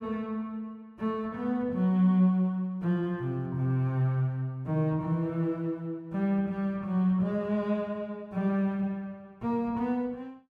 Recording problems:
none

